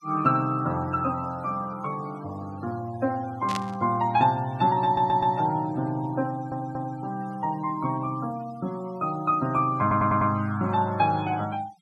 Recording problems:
denoising artefacts; signal-to-artefact ratio 22 dB
burst of static; at 3.5 s; peak -2 dB vs average level
audio stuttering; at 5 s, at 6.5 s and at 10 s

